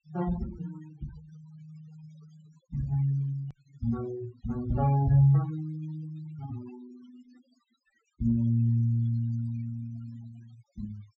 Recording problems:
treble missing; nothing above 8 kHz
noise reduction artefacts; signal-to-artefact ratio 21 dB
click at an edit; at 3.5 s

